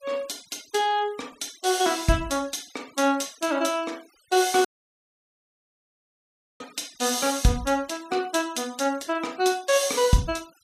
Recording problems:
denoising artefacts; signal-to-artefact ratio 23 dB
dropout; at 4.5 s for 2 s

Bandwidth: 15 kHz